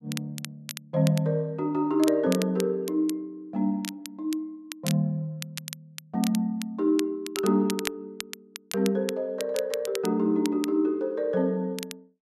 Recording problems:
crackle; vinyl, SNR 12 dB

